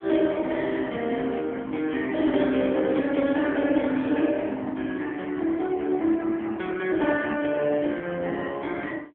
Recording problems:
telephone audio; 220 Hz to 3.4 kHz, AMR-NB

